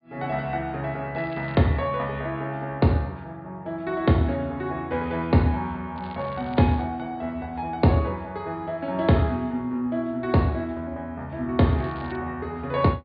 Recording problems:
low-pass filter; nothing above 4.6 kHz
crackling; at 1 s, at 6 s and at 12 s; loose cable, SNR 26 dB

